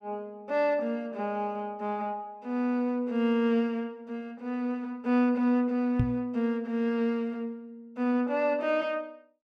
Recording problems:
knock on the microphone; at 6 s; peak +6 dB vs average level

